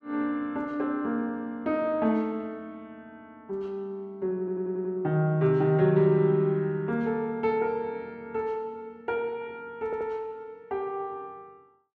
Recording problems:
stutter; at 4.5 s and at 10 s

